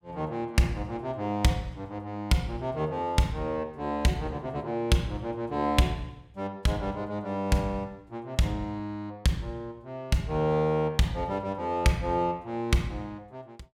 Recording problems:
none

